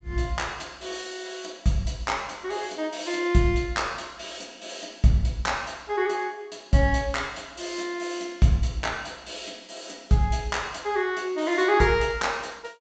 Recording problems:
treble missing; nothing above 8 kHz

